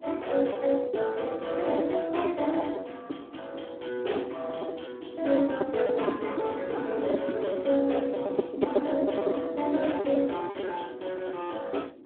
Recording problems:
phone line; 240 Hz to 3.6 kHz, Speex
wind noise; below 440 Hz, SNR 7 dB
lost packets; 6% of the sound replaced, filled with repeated pitch periods

